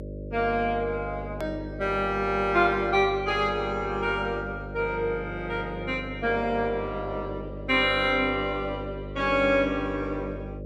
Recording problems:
electrical hum; 50 Hz, harmonics up to 600 Hz, SNR 11 dB
hard cut with a click; at 1.5 s

